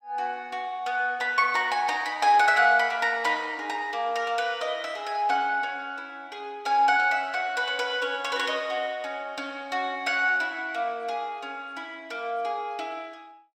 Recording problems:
none

